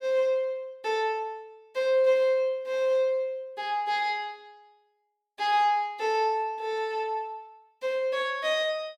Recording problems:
none

